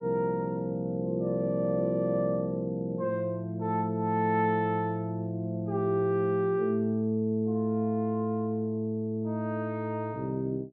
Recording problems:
none

